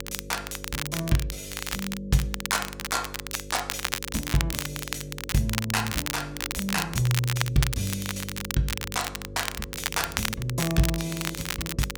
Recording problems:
hum; 50 Hz, harmonics up to 550 Hz, SNR 13 dB
crackling; vinyl, SNR 3 dB

